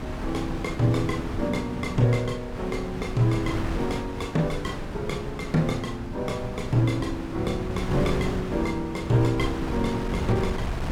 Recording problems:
wind on the microphone; below 380 Hz, SNR 6 dB

